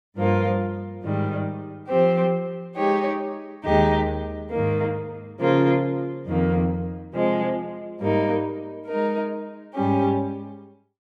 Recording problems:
none

